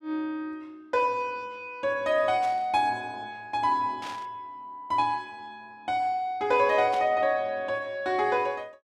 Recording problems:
static burst; at 2.5 s, at 4 s and at 7 s; peak -10 dB vs average level

